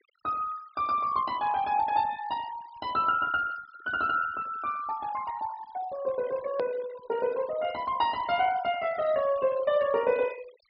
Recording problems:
treble cut off; nothing above 5.5 kHz
noise reduction artefacts; signal-to-artefact ratio 18 dB
click at an edit; at 6.5 s

